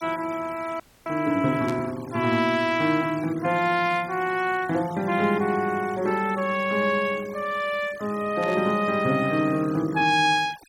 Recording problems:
denoising artefacts; signal-to-artefact ratio 21 dB
frozen audio; at 1 s
static burst; at 1.5 s and at 8.5 s; peak -11 dB vs average level

